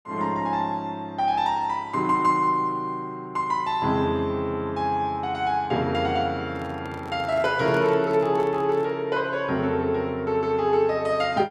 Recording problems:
handling noise; from 6.5 to 9 s; peak -8 dB vs average level

